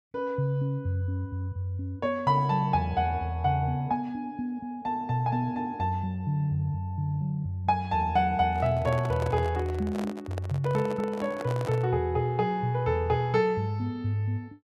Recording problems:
handling noise; from 8.5 to 12 s; peak -5 dB vs average level

